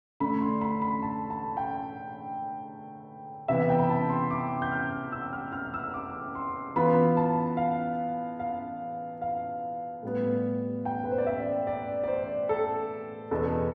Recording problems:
none

